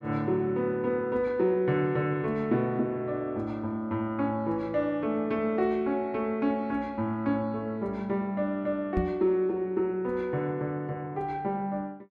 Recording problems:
microphone thump; at 9 s; peak +2 dB vs average level

